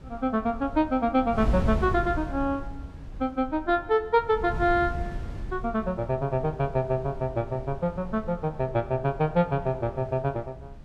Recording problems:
wind noise; below 120 Hz, SNR 11 dB

